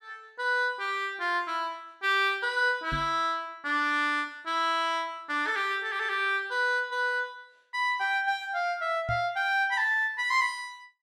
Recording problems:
microphone thump; at 3 s and at 9 s; peak -4 dB vs average level

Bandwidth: 14 kHz